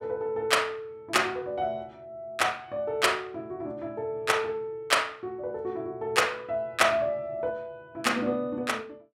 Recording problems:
none

